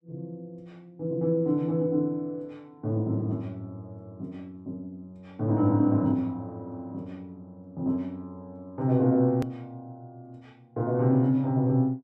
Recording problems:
hard cut with a click; at 9.5 s

